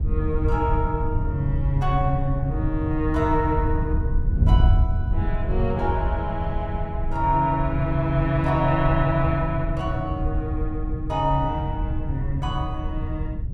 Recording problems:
wind noise; below 100 Hz, SNR 1 dB

